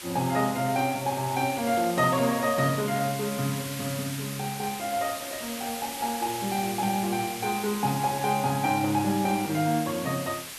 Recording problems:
background hiss; slope +1 dB per octave, SNR 9 dB

